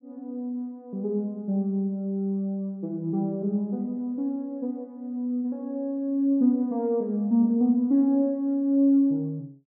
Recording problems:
none

